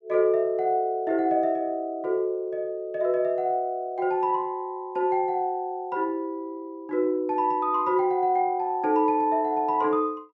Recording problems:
none

